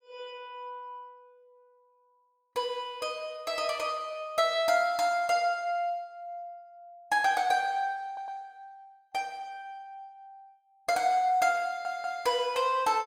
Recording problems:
stutter; at 8 s and at 12 s

